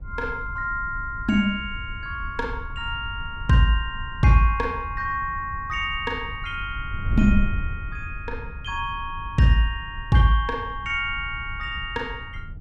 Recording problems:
wind on the microphone; below 90 Hz, SNR 10 dB

